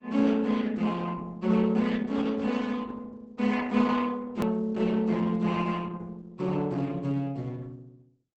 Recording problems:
lossy codec; Opus, log-spectral distance 3 dB, nothing above 20.1 kHz
click at an edit; at 4.5 s

